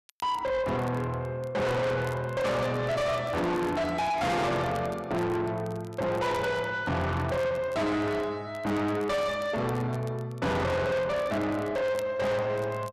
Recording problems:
distorted audio; soft clipping, signal-to-distortion ratio 6 dB
crackling; vinyl, SNR 25 dB

